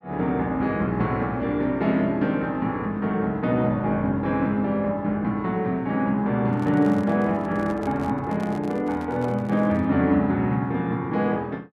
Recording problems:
microphone handling noise; from 6.5 to 10 s; peak -10 dB vs average level

